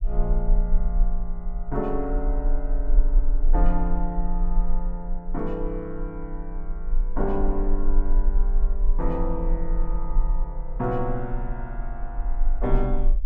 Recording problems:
low-frequency rumble; below 34 Hz, strongest tone 20 Hz, SNR -3 dB

